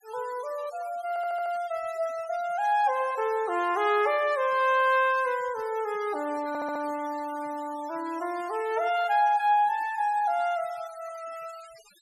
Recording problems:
noise reduction artefacts; signal-to-artefact ratio 21 dB
audio stuttering; at 1 s and at 6.5 s

